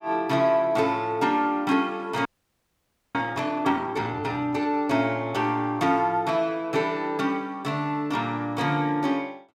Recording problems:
audio freezing; at 2.5 s for 1 s

